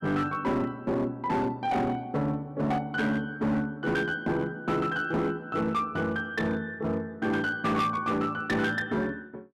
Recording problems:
distortion; hard clipping, uneven, signal-to-distortion ratio 11 dB

